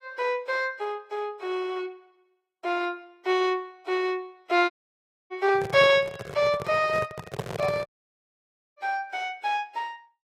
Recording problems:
codec artefacts; AAC, log-spectral distance 2 dB, nothing above 13.1 kHz
audio cutting out; at 4.5 s for 0.5 s and at 8 s for 1 s
microphone handling noise; from 5.5 to 8 s; peak 0 dB vs average level

